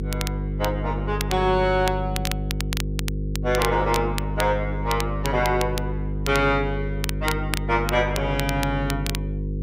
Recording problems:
electrical hum; 50 Hz, harmonics up to 500 Hz, SNR 4 dB
crackle; vinyl, SNR 9 dB

